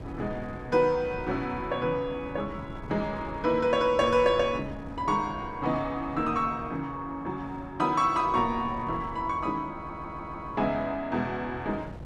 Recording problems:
wind on the microphone; below 280 Hz, SNR 16 dB
audio stuttering; at 10 s

